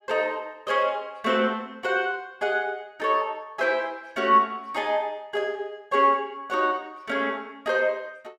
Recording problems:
none

